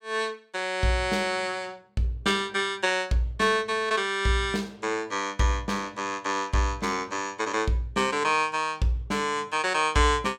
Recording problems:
none

